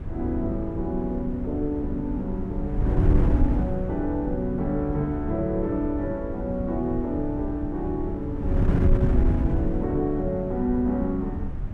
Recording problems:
wind noise; below 130 Hz, SNR 1 dB

